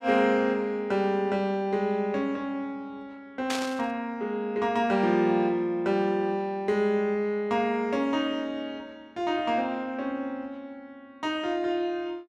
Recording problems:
static burst; at 3.5 s; peak 0 dB vs average level

